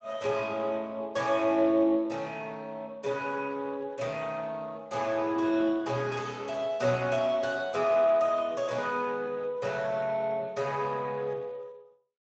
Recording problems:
codec artefacts; Speex, log-spectral distance 3 dB

